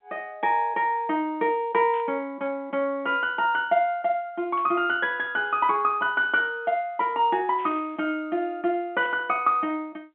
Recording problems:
phone line; 190 Hz to 3.7 kHz, G.711
static burst; 4 times, first at 2 s; peak -17 dB vs average level

